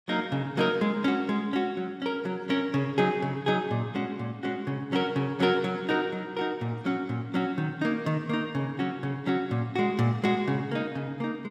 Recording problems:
none

